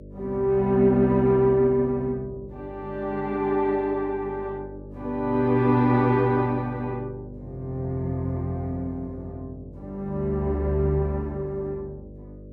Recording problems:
electrical hum; 50 Hz, harmonics up to 600 Hz, SNR 18 dB

